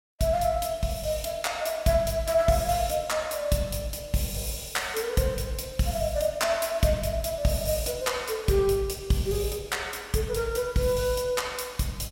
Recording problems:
none

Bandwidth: 16.5 kHz